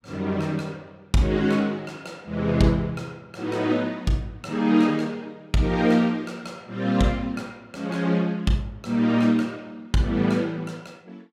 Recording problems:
none

